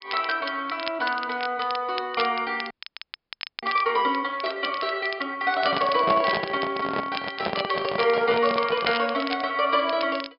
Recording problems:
treble cut off; nothing above 5.2 kHz
crackle; vinyl, SNR 12 dB
frozen audio; at 2.5 s for 1 s
handling noise; from 5.5 to 9 s; peak +1 dB vs average level

